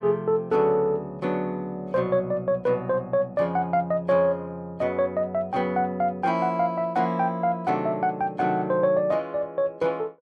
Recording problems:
none

